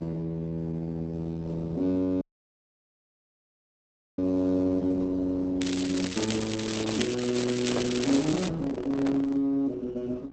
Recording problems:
lossy codec; Opus, log-spectral distance 5 dB, nothing above 8 kHz
electrical hum; 60 Hz, harmonics up to 1.6 kHz, SNR 25 dB
dropout; at 2 s for 2 s
crackling; from 5.5 to 8.5 s; loose cable, SNR 7 dB
microphone handling noise; from 6.5 to 9.5 s; peak 0 dB vs average level

